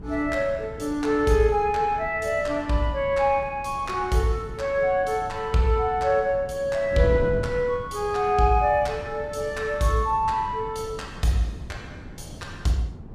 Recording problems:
wind on the microphone; below 220 Hz, SNR 15 dB

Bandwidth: 15.5 kHz